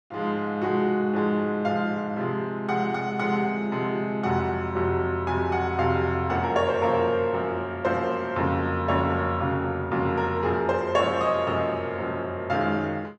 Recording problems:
none

